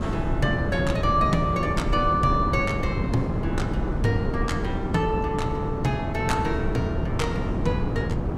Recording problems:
wind on the microphone; below 300 Hz, SNR 0 dB

